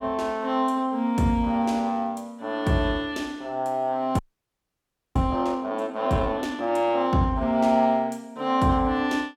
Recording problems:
audio freezing; at 4 s for 1 s

